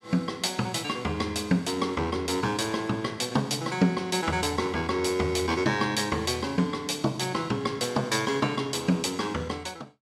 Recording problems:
none

